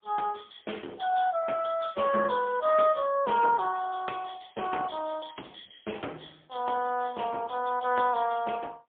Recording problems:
phone line; 340 Hz to 3.4 kHz, AMR-NB, then MP3

